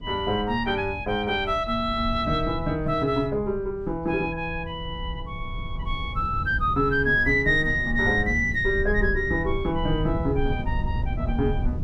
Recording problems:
low-frequency rumble; below 100 Hz, SNR 9 dB

